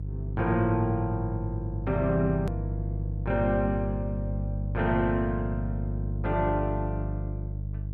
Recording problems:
hum; 50 Hz, harmonics up to 350 Hz, SNR 3 dB
hard cut with a click; at 2.5 s

